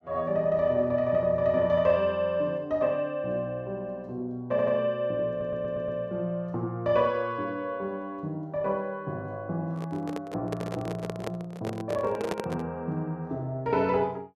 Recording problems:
stutter; at 4.5 s and at 5.5 s
microphone handling noise; from 9.5 to 13 s; peak +2 dB vs average level

